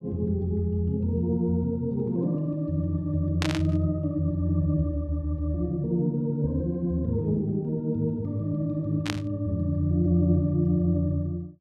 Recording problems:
static burst; at 3.5 s and at 9 s; peak 0 dB vs average level

